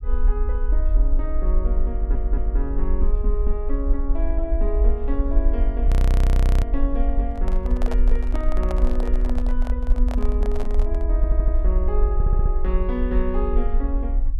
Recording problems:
low-frequency rumble; below 48 Hz, SNR -7 dB
audio stuttering; at 2 s, at 11 s and at 12 s
frozen audio; at 6 s for 0.5 s
handling noise; from 7.5 to 11 s; peak +2 dB vs average level

